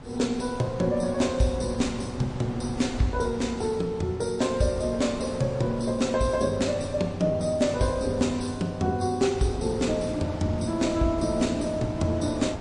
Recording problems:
lossy compression; MP3, log-spectral distance 2 dB, nothing above 9 kHz
wind on the microphone; below 680 Hz, SNR 13 dB

